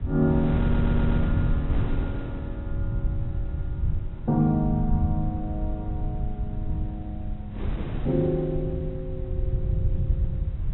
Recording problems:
treble cut off; nothing above 3.9 kHz
low-frequency rumble; below 100 Hz, SNR 2 dB
wind on the microphone; below 160 Hz, SNR 7 dB
stutter; at 0.5 s

